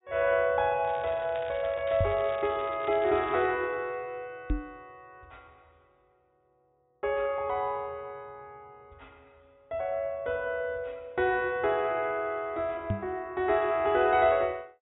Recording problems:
treble missing; nothing above 4 kHz
crackling; from 1 to 3.5 s; loose cable, SNR 20 dB
microphone bump; at 2 s, at 4.5 s and at 13 s; peak +2 dB vs average level

